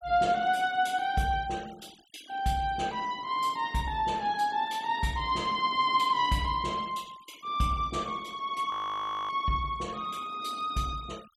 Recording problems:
denoising artefacts; signal-to-artefact ratio 23 dB
audio freezing; at 8.5 s for 0.5 s

